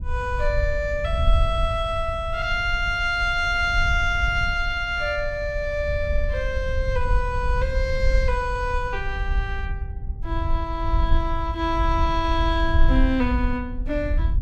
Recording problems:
wind on the microphone; below 64 Hz, SNR 3 dB

